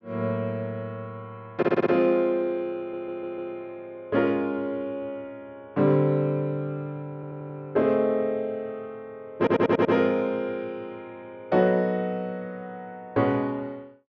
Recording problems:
low-pass filter; nothing above 8 kHz
audio stuttering; 4 times, first at 1.5 s

